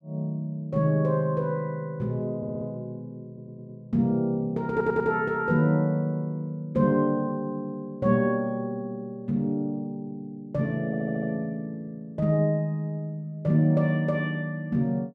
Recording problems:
stutter; 4 times, first at 2.5 s

